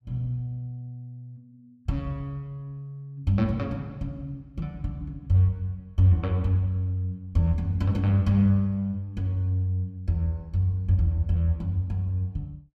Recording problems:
none

